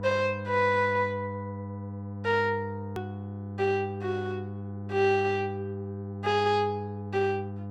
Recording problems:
electrical hum; 50 Hz, harmonics up to 1 kHz, SNR 9 dB
edit click; at 3 s

